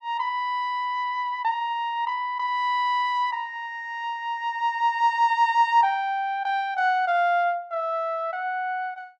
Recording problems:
none

